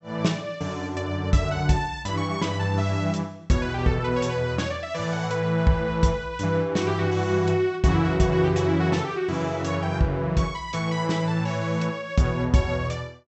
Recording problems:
low-pass filter; nothing above 7.9 kHz

